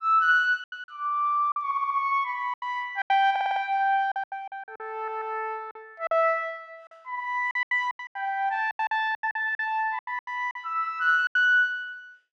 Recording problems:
packet loss; 14% of the sound replaced, filled with silence
stutter; at 1.5 s, at 3.5 s and at 5 s

